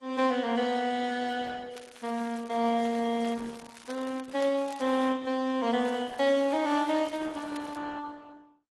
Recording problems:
codec artefacts; Opus, then AAC, log-spectral distance 5 dB, nothing above 12 kHz
crackling; from 1.5 to 5 s and from 6 to 8 s; loose cable, SNR 20 dB

